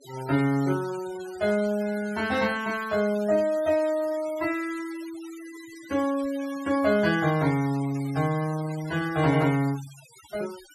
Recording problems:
denoising artefacts; signal-to-artefact ratio 18 dB

